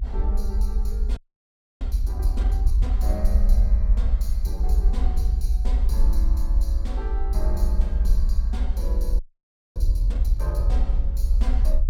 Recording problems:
rumble; below 56 Hz, SNR -12 dB
audio freezing; at 1 s for 0.5 s and at 9 s for 0.5 s

